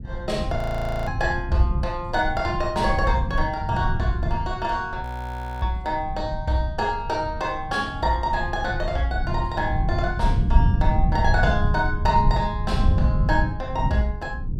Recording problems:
low-frequency rumble; below 120 Hz, SNR 2 dB
frozen audio; at 0.5 s for 0.5 s and at 5 s for 0.5 s

